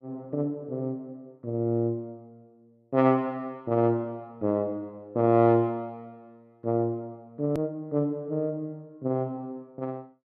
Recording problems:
click at an edit; at 7.5 s

